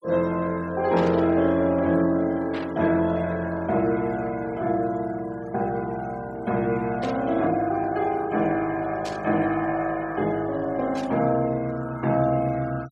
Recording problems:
denoising artefacts; signal-to-artefact ratio 23 dB
burst of static; 5 times, first at 1 s; peak -9 dB vs average level

